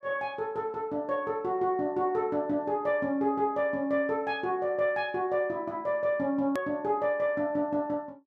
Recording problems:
click at an edit; at 6.5 s

